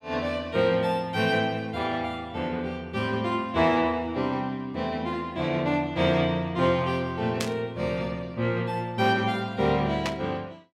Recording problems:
static burst; at 7.5 s and at 10 s; peak +1 dB vs average level

